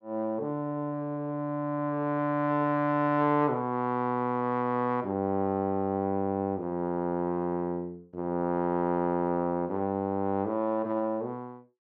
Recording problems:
none

